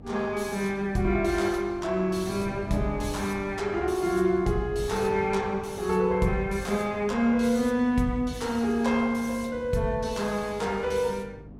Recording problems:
hum; 50 Hz, harmonics up to 300 Hz, SNR 21 dB
wind on the microphone; below 330 Hz, SNR 18 dB

